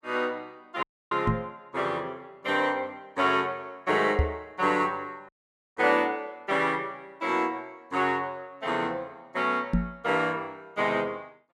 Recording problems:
audio cutting out; at 1 s and at 5.5 s
knock on the microphone; at 1.5 s, at 4 s and at 9.5 s; peak +7 dB vs average level

